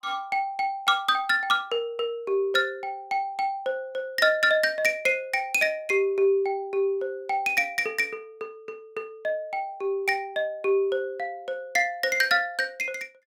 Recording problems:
none

